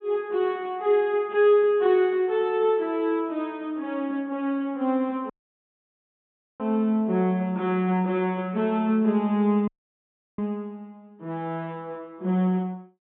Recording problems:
low-pass filter; nothing above 4 kHz
audio cutting out; at 5.5 s for 1.5 s and at 9.5 s for 0.5 s

